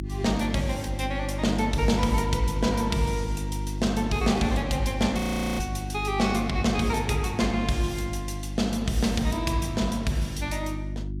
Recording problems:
hum; 50 Hz, harmonics up to 350 Hz, SNR 6 dB
audio freezing; at 5 s

